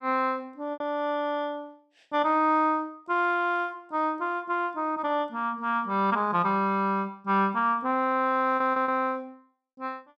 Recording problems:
lost packets; 2% of the sound replaced, filled with repeated pitch periods

